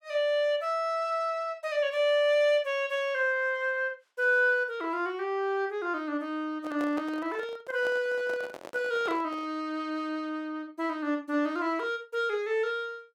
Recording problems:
handling noise; from 6.5 to 9.5 s; peak -6 dB vs average level

